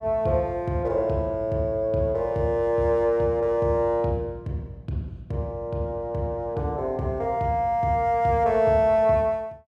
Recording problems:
none

